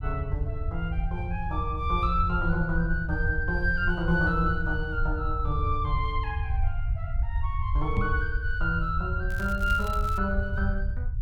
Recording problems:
rumble; below 82 Hz, SNR 2 dB
microphone bump; at 8 s; peak +3 dB vs average level
crackling; at 9.5 s; loose cable, SNR 18 dB

